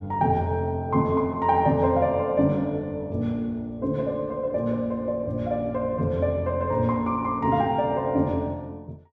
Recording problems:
none

